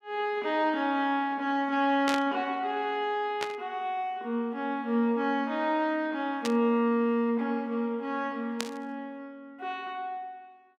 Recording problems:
static burst; 4 times, first at 2 s; peak +1 dB vs average level

